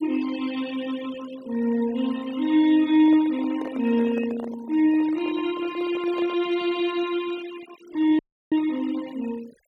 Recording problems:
noise reduction artefacts; signal-to-artefact ratio 20 dB
handling noise; from 3 to 6.5 s; peak -9 dB vs average level
dropout; at 8 s

